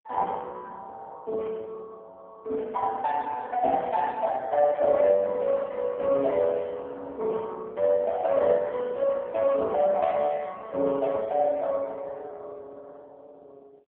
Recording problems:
telephone audio; 300 Hz to 3.3 kHz, AMR-NB

